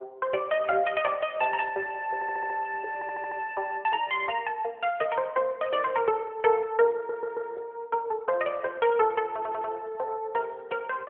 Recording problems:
telephone audio; 340 Hz to 3.5 kHz, AMR-NB
stutter; 4 times, first at 2 s

